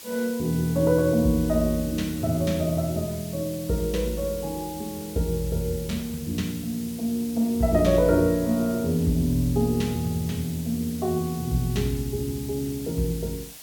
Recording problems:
background hiss; SNR 15 dB

